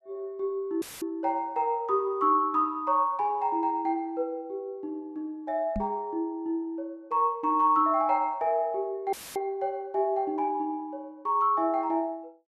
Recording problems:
audio cutting out; at 1 s and at 9 s; filled with static
knock on the microphone; at 6 s; peak -1 dB vs average level

